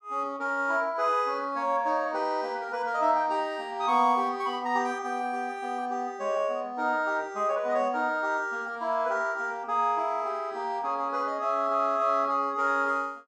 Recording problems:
none

